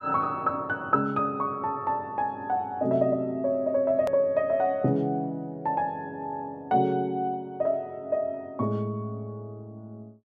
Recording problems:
edit click; at 4 s

